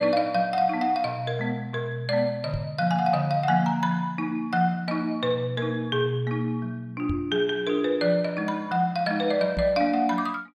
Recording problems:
knock on the microphone; at 2.5 s, at 7 s and at 9.5 s; peak -1 dB vs average level

